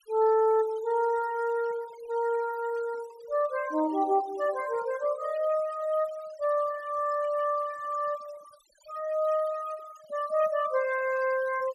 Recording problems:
denoising artefacts; signal-to-artefact ratio 20 dB

